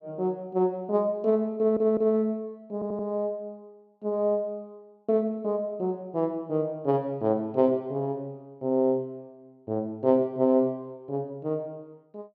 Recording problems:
audio stuttering; at 1.5 s and at 2.5 s

